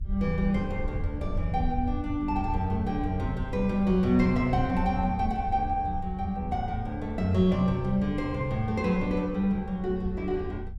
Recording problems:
rumble; below 82 Hz, SNR 8 dB

